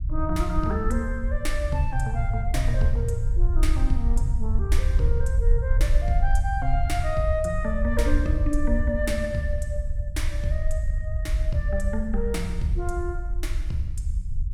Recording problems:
low-frequency rumble; below 64 Hz, SNR -2 dB

